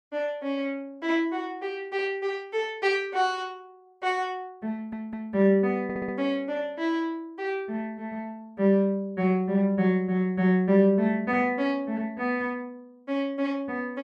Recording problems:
stutter; at 4.5 s and at 6 s

